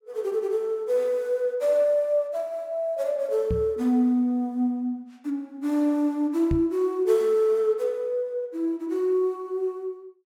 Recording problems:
knock on the microphone; at 3.5 s and at 6.5 s; peak +2 dB vs average level

